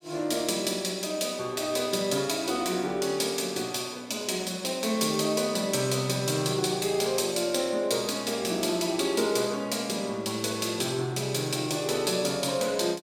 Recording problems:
none

